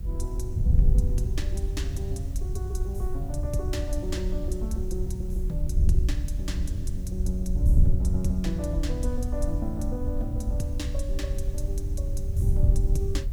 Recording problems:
background hiss; slope -4 dB per octave, SNR 21 dB
wind on the microphone; below 76 Hz, SNR -6 dB

